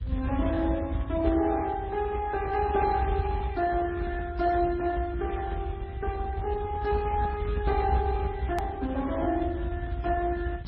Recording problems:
lossy compression; Speex, then MP3, log-spectral distance 2 dB, nothing above 13.1 kHz
low-frequency rumble; below 96 Hz, SNR 5 dB
click at an edit; at 8.5 s

